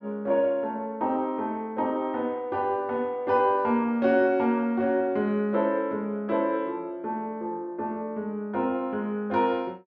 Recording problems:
none

